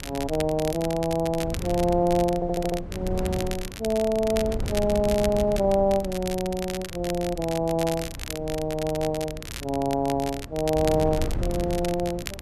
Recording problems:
wind on the microphone; below 180 Hz, SNR 10 dB
crackle; vinyl, SNR 12 dB
audio stuttering; at 2.5 s and at 5 s

